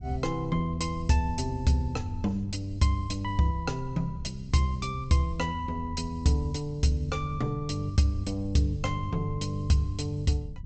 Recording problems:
treble missing; nothing above 8 kHz
rumble; below 100 Hz, SNR 14 dB

